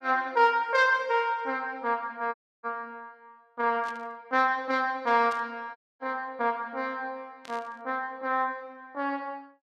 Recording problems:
dropout; at 2.5 s and at 6 s
burst of static; at 4 s, at 5.5 s and at 7.5 s; peak -13 dB vs average level

